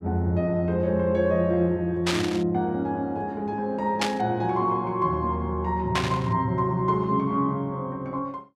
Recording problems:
static burst; at 2 s, at 4 s and at 6 s; peak +3 dB vs average level

